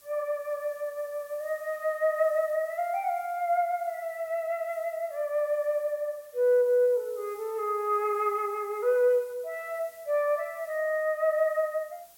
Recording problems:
background hiss; slope 0 dB per octave, SNR 25 dB

